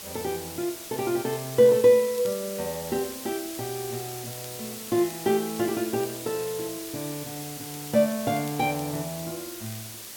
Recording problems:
hiss; slope 0 dB per octave, SNR 10 dB
crackle; vinyl, SNR 28 dB

